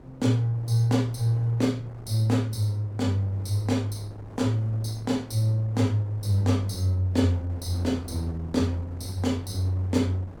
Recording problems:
wind noise; below 530 Hz, SNR 19 dB

